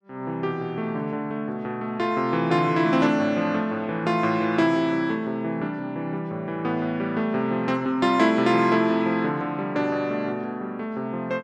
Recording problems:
none

